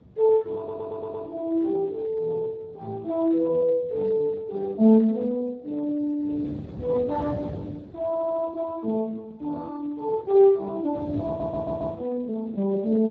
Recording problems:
lossy codec; Speex, log-spectral distance 2 dB
wind on the microphone; below 350 Hz, SNR 15 dB
stutter; at 0.5 s, at 8 s and at 11 s

